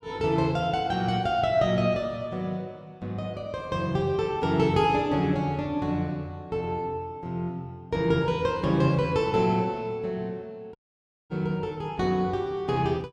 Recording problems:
audio cutting out; at 11 s for 0.5 s

